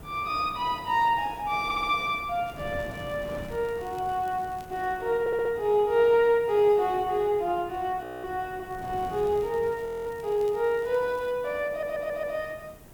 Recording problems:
hiss; slope -2 dB per octave, SNR 28 dB
wind on the microphone; below 480 Hz, SNR 19 dB
audio stuttering; at 1.5 s, at 5 s and at 12 s
crackling; from 2.5 to 5 s and from 8.5 to 11 s; loose cable, SNR 29 dB
frozen audio; at 8 s and at 10 s

